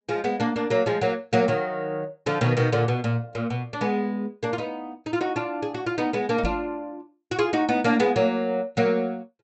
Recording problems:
treble cut off; nothing above 7.7 kHz
microphone bump; at 6.5 s; peak 0 dB vs average level

